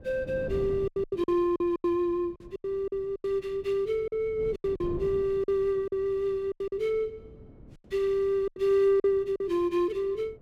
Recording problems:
wind on the microphone; below 290 Hz, SNR 18 dB
lost packets; 11% of the sound replaced, filled with silence

